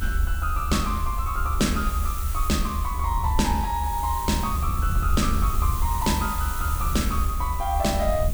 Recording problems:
background hiss; slope 0 dB per octave, SNR 9 dB
rumble; below 74 Hz, SNR 2 dB
wind noise; below 84 Hz, SNR 5 dB

